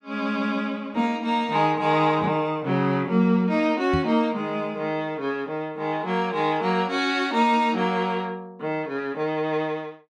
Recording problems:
knock on the microphone; at 4 s; peak 0 dB vs average level

